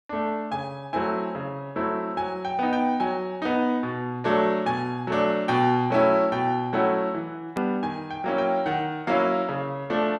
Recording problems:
click at an edit; at 7.5 s

